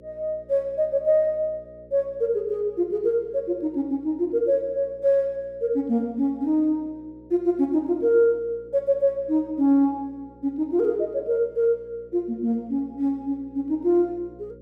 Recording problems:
hum; 60 Hz, harmonics up to 540 Hz, SNR 26 dB

